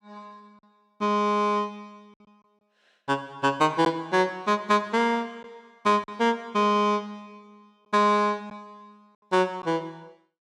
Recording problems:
lost packets; 1.2% of the sound replaced, filled with silence

